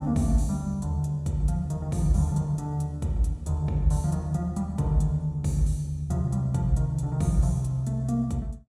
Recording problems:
none

